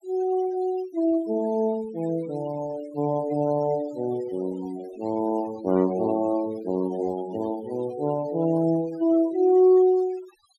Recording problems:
noise reduction artefacts; signal-to-artefact ratio 21 dB

